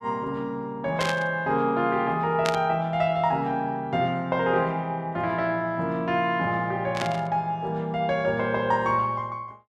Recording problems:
static burst; at 1 s, at 2.5 s and at 7 s; peak 0 dB vs average level

